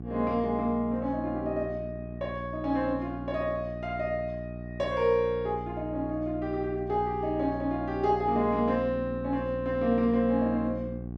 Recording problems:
mains hum; 60 Hz, harmonics up to 780 Hz, SNR 9 dB

